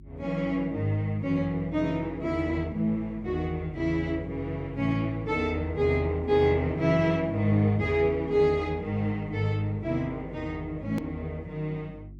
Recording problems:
hum; 50 Hz, harmonics up to 350 Hz, SNR 19 dB
hard cut with a click; at 11 s

